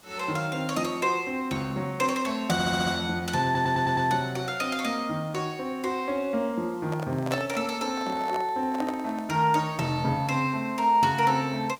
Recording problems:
hiss; SNR 27 dB
audio stuttering; at 2.5 s and at 3.5 s
handling noise; from 7 to 9.5 s; peak 0 dB vs average level

